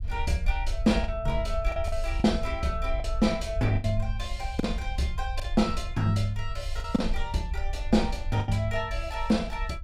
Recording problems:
low-frequency rumble; below 60 Hz, SNR 6 dB
packet loss; 5% of the sound replaced, filled with the last packet

